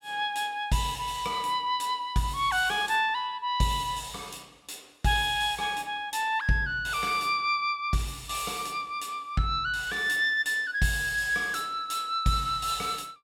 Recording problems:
none

